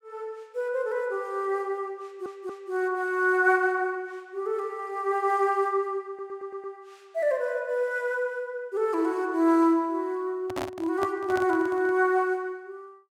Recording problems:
audio stuttering; at 2 s and at 6 s
handling noise; from 10 to 12 s; peak -2 dB vs average level

